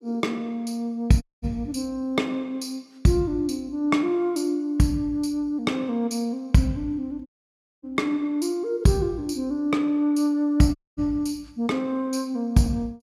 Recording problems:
dropout; at 1 s, at 7.5 s for 0.5 s and at 11 s

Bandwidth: 14.5 kHz